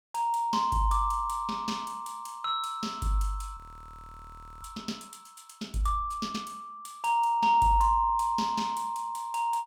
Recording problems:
audio freezing; at 3.5 s for 1 s

